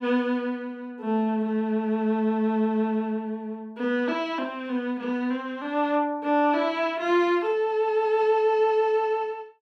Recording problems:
none

